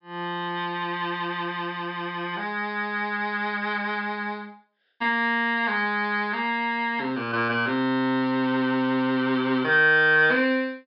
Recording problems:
low-pass filter; nothing above 5.3 kHz

